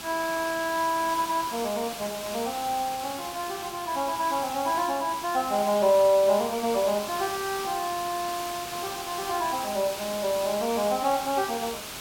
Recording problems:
background hiss; slope -1 dB per octave, SNR 9 dB

